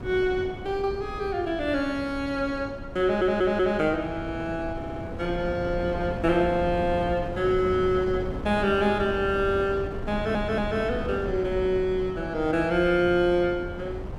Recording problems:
wind on the microphone; below 350 Hz, SNR 10 dB
audio stuttering; at 3 s, at 5 s and at 10 s

